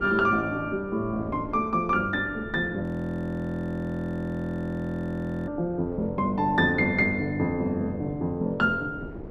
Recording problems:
wind on the microphone; below 410 Hz, SNR 15 dB
frozen audio; at 3 s for 2.5 s

